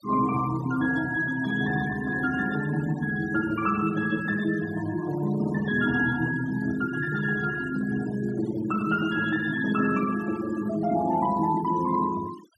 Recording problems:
noise reduction artefacts; signal-to-artefact ratio 16 dB

